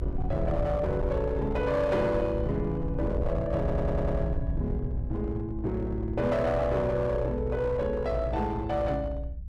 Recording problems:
distortion; hard clipping, uneven, signal-to-distortion ratio 10 dB
rumble; below 92 Hz, SNR 5 dB
stutter; at 3.5 s

